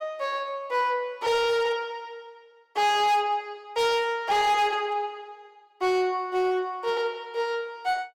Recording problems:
distorted audio; hard clipping, signal-to-distortion ratio 11 dB

